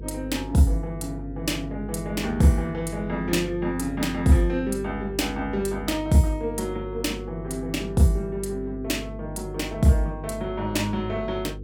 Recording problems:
electrical hum; 50 Hz, harmonics up to 500 Hz, SNR 11 dB

